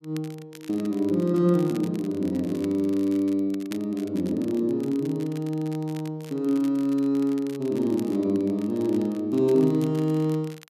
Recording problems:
crackle; vinyl, SNR 23 dB

